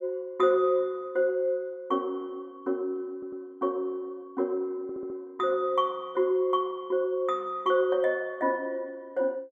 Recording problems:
stutter; at 3 s and at 5 s

